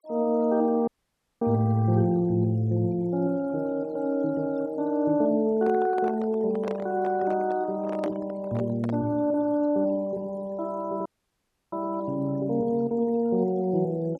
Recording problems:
denoising artefacts; signal-to-artefact ratio 27 dB
audio cutting out; at 1 s for 0.5 s and at 11 s for 0.5 s
microphone handling noise; from 5.5 to 9 s; peak -5 dB vs average level

